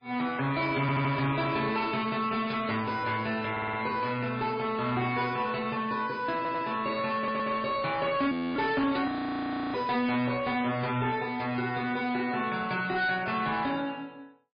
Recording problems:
lossy compression; MP3, log-spectral distance 4 dB
distorted audio; soft clipping, signal-to-distortion ratio 11 dB
stutter; 4 times, first at 1 s
frozen audio; at 8.5 s and at 9 s for 0.5 s

